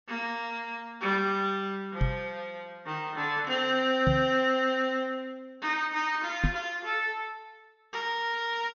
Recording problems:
low-pass filter; nothing above 7 kHz
microphone thump; at 2 s, at 4 s and at 6.5 s; peak +6 dB vs average level

